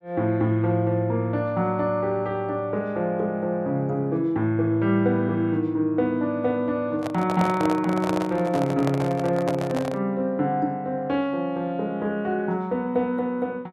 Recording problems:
handling noise; from 7 to 10 s; peak -1 dB vs average level

